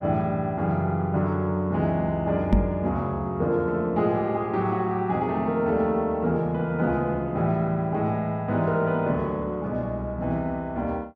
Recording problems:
knock on the microphone; at 2.5 s; peak +9 dB vs average level

